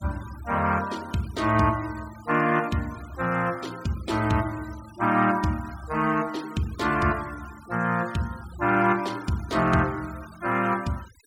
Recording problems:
noise reduction artefacts; signal-to-artefact ratio 22 dB

